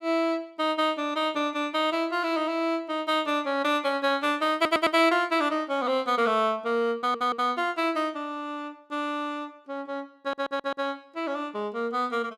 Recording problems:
stutter; at 4.5 s, at 7 s and at 10 s

